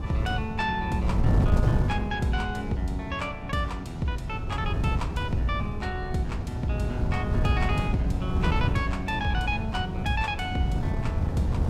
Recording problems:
wind noise; below 160 Hz, SNR 0 dB

